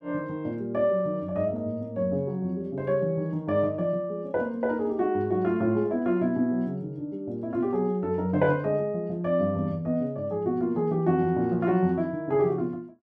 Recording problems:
none

